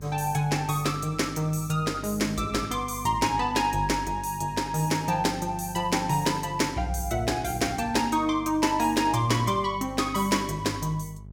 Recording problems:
electrical hum; 50 Hz, harmonics up to 450 Hz, SNR 16 dB

